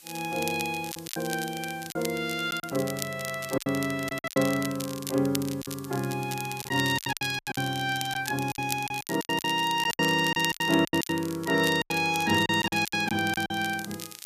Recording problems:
background hiss; SNR 25 dB
crackle; vinyl, SNR 11 dB
lost packets; 13% of the sound replaced, filled with silence

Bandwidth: 14.5 kHz